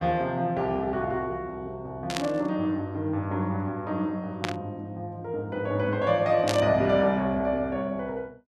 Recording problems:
burst of static; at 2 s, at 4.5 s and at 6.5 s; peak +2 dB vs average level

